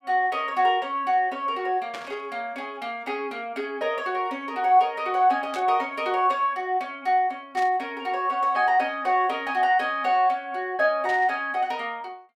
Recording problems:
static burst; 4 times, first at 2 s; peak -8 dB vs average level

